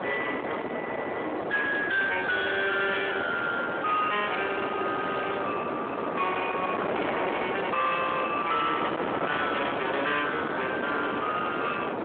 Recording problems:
telephone audio; 190 Hz to 3.3 kHz, Speex
distorted audio; soft clipping, signal-to-distortion ratio 7 dB
wind on the microphone; below 1.4 kHz, SNR 4 dB

